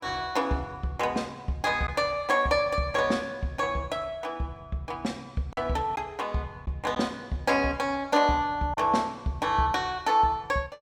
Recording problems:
lost packets; 1% of the sound replaced, filled with silence

